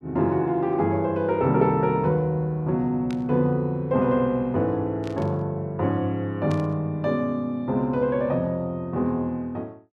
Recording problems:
burst of static; at 3 s, at 5 s and at 6.5 s; peak -12 dB vs average level

